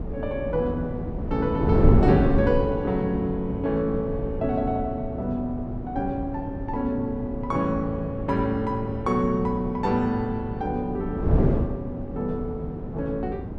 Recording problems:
wind on the microphone; below 300 Hz, SNR 2 dB

